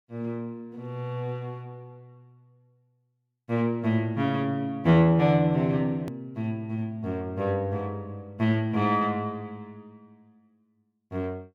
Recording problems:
edit click; at 6 s

